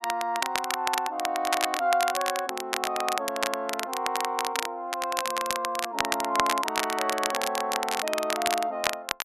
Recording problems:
crackling; vinyl, SNR 2 dB

